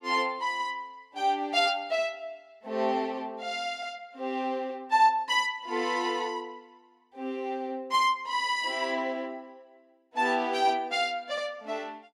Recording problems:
none

